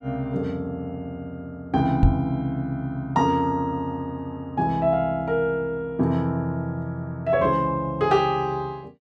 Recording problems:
knock on the microphone; at 2 s; peak +10 dB vs average level

